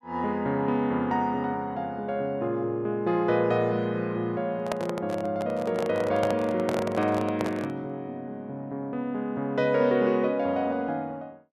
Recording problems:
handling noise; from 4.5 to 8 s; peak +2 dB vs average level

